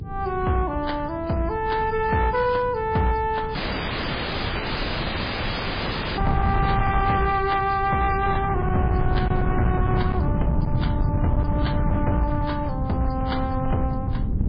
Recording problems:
lossy codec; MP3, log-spectral distance 5 dB
distortion; hard clipping, signal-to-distortion ratio 12 dB
electrical hum; 60 Hz, harmonics up to 480 Hz, SNR 21 dB
wind on the microphone; below 160 Hz, SNR 3 dB
audio cutting out; at 3.5 s for 2.5 s

